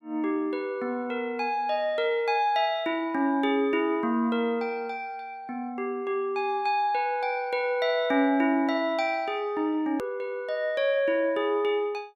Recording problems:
edit click; at 10 s

